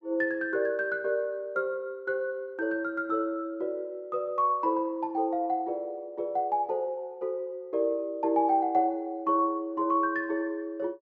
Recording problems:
treble missing; nothing above 7.7 kHz

